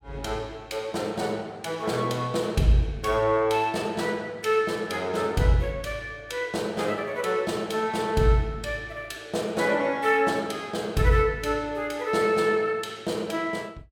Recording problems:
none

